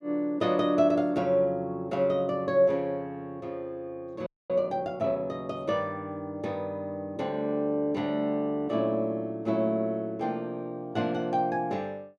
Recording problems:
frozen audio; at 4.5 s

